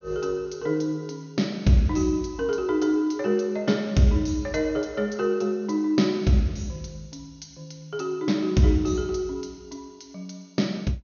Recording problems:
low-pass filter; nothing above 6.7 kHz

